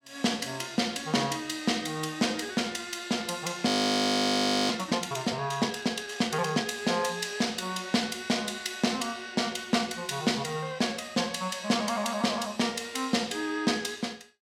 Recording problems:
audio freezing; at 3.5 s for 1 s

